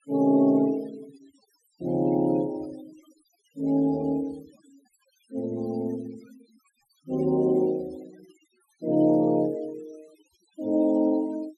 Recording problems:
denoising artefacts; signal-to-artefact ratio 27 dB

